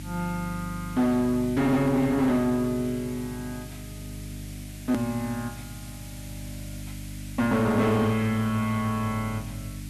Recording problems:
distortion; hard clipping, uneven, signal-to-distortion ratio 12 dB
mains hum; 50 Hz, harmonics up to 300 Hz, SNR 14 dB
background hiss; SNR 19 dB
edit click; at 5 s

